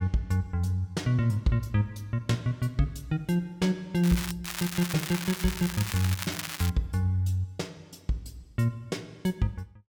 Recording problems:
crackle; at 4 s and from 4.5 to 6.5 s; loose cable, SNR 6 dB

